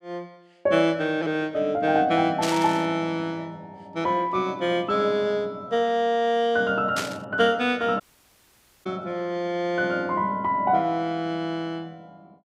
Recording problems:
static burst; at 2.5 s and at 7 s; peak -1 dB vs average level
audio cutting out; at 8 s for 1 s

